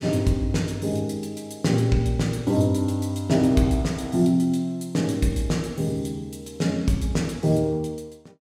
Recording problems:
none

